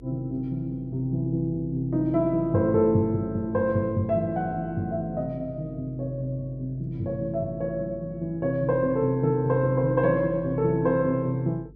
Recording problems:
hum; 50 Hz, harmonics up to 450 Hz, SNR 21 dB

